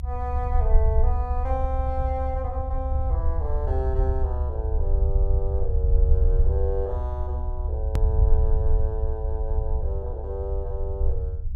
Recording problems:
low-frequency rumble; below 70 Hz, SNR -7 dB
hard cut with a click; at 8 s

